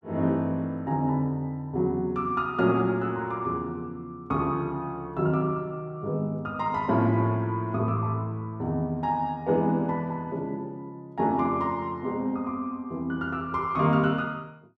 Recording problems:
none

